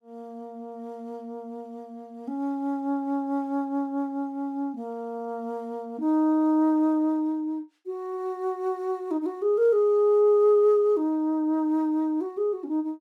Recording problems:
none

